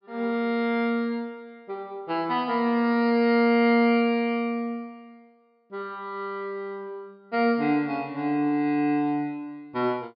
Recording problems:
treble cut off; nothing above 5.5 kHz

